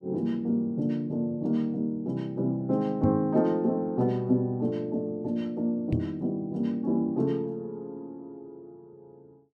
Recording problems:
microphone thump; at 3 s and at 6 s; peak +3 dB vs average level

